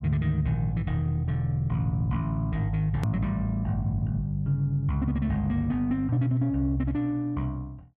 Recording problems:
hard cut with a click; at 3 s

